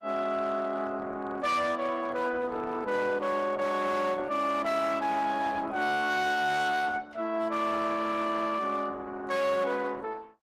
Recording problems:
codec artefacts; Opus, log-spectral distance 3 dB, nothing above 15.1 kHz
distorted audio; hard clipping, uneven, signal-to-distortion ratio 12 dB

